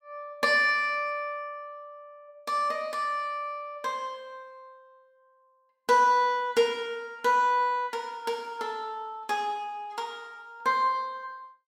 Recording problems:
none

